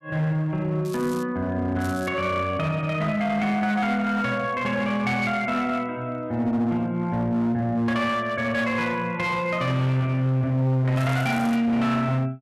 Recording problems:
distorted audio; hard clipping, uneven, signal-to-distortion ratio 11 dB
crackling; at 1 s, at 2 s and at 11 s; loose cable, SNR 21 dB

